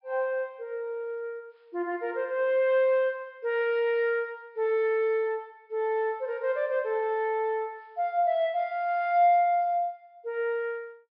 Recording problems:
treble missing; nothing above 5.5 kHz

